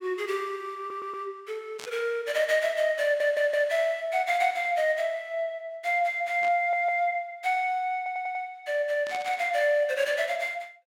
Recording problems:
stutter; 4 times, first at 1 s
burst of static; at 2 s, at 6.5 s and at 9 s; peak -8 dB vs average level

